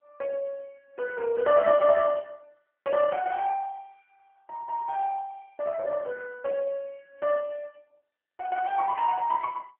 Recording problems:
phone line; 340 Hz to 2.8 kHz, AMR-NB

